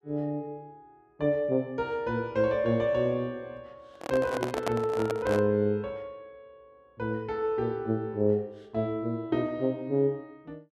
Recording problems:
handling noise; from 4 to 5.5 s; peak +3 dB vs average level

